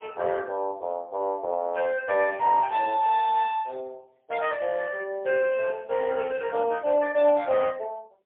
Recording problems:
phone line; 340 Hz to 2.8 kHz, AMR-NB, then MP3

